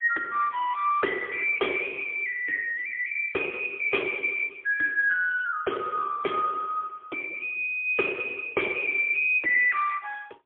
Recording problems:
phone line; 670 Hz to 3.4 kHz, AMR-NB, then MP3

